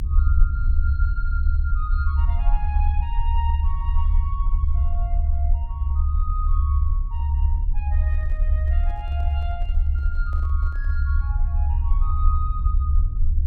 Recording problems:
rumble; below 72 Hz, SNR -14 dB
handling noise; from 8 to 11 s; peak -8 dB vs average level

